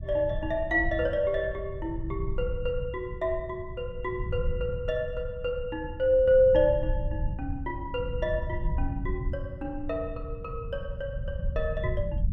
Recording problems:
low-frequency rumble; below 96 Hz, SNR 7 dB

